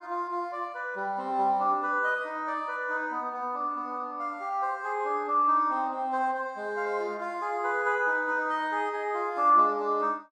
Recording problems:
none

